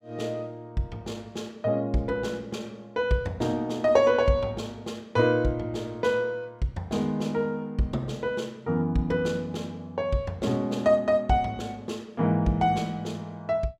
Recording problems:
none

